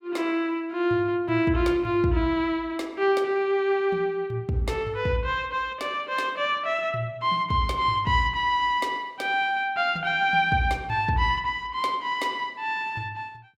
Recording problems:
none

